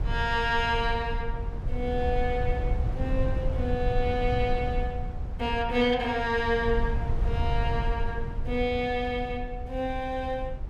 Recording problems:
rumble; below 86 Hz, SNR 3 dB

